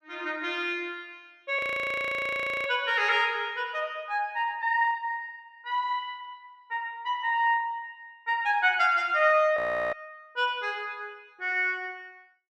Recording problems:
frozen audio; at 1.5 s for 1 s and at 9.5 s

